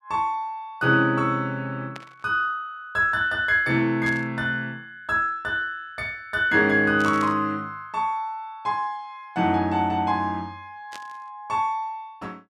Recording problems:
burst of static; 4 times, first at 2 s; peak -10 dB vs average level

